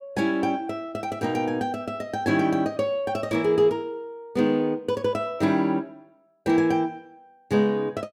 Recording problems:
none

